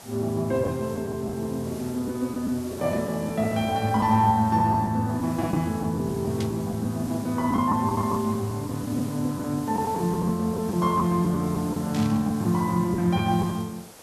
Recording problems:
hiss; SNR 18 dB
packet loss; 6% of the sound replaced, filled with the last packet
static burst; at 6.5 s and at 12 s; peak -7 dB vs average level

